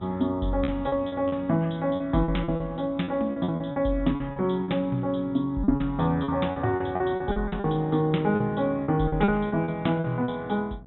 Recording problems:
low-pass filter; nothing above 3.8 kHz
hum; 60 Hz, harmonics up to 1.1 kHz, SNR 23 dB
lost packets; 13% of the sound replaced, filled with repeated pitch periods

